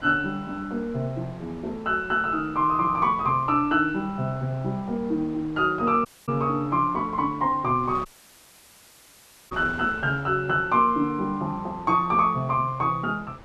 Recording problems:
wind noise; below 1.1 kHz, SNR 21 dB
audio cutting out; at 6 s and at 8 s for 1.5 s

